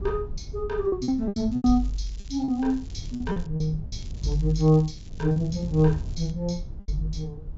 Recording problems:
treble missing; nothing above 7.5 kHz
rumble; below 86 Hz, SNR 14 dB
wind noise; below 120 Hz, SNR 15 dB
packet loss; 9% of the sound replaced, filled with repeated pitch periods
crackle; from 1.5 to 3.5 s and from 4 to 6.5 s; loose cable, SNR 27 dB

